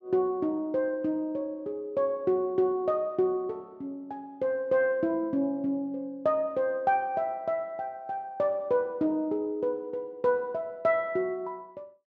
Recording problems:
none

